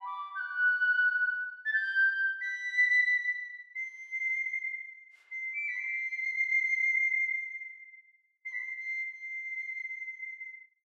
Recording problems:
none

